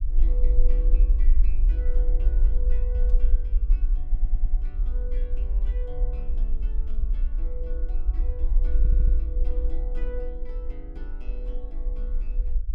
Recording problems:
low-frequency rumble; below 44 Hz, SNR -17 dB
static burst; at 3 s and at 7 s; peak -14 dB vs average level
stutter; at 4 s and at 9 s

